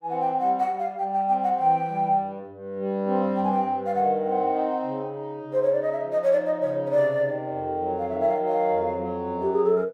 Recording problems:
none

